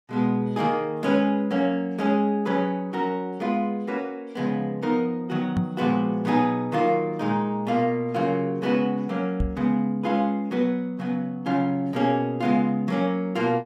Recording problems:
microphone thump; at 5.5 s and at 9.5 s; peak +2 dB vs average level

